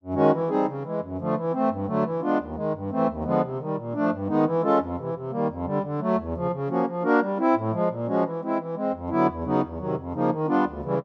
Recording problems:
none

